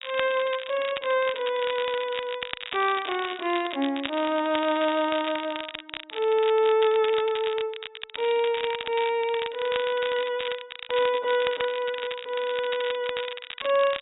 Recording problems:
low-pass filter; nothing above 4 kHz
crackle; vinyl, SNR 10 dB

